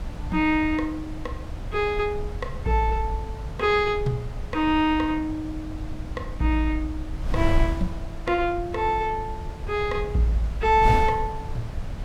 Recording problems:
wind on the microphone; below 100 Hz, SNR 8 dB

